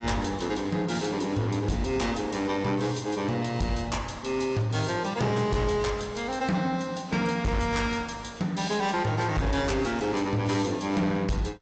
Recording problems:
low-pass filter; nothing above 7.6 kHz
codec artefacts; AAC, log-spectral distance 4 dB
distorted audio; hard clipping, signal-to-distortion ratio 11 dB

